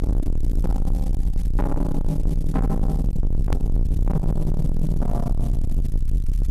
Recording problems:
distorted audio; soft clipping, signal-to-distortion ratio 6 dB
hiss; slope 0 dB per octave, SNR 22 dB
low-frequency rumble; below 78 Hz, strongest tone 20 Hz, SNR -1 dB
hard cut with a click; at 3.5 s

